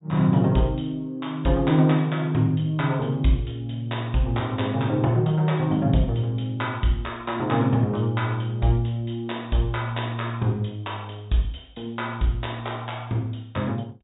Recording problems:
treble missing; nothing above 4 kHz

